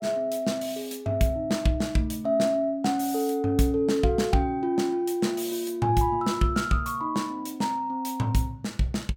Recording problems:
none

